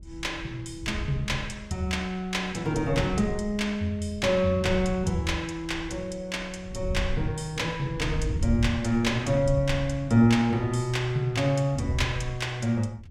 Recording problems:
wind noise; below 94 Hz, SNR 10 dB

